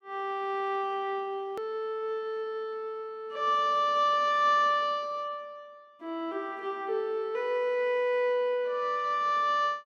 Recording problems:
click at an edit; at 1.5 s

